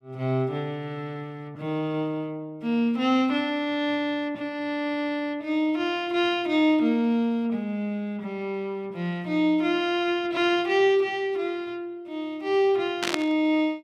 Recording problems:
static burst; at 13 s; peak +3 dB vs average level

